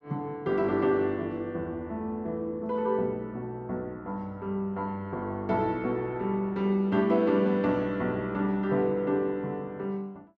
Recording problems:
none

